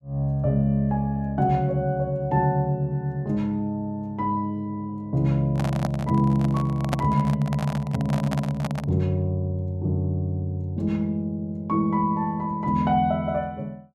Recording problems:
handling noise; from 5.5 to 9 s; peak +2 dB vs average level

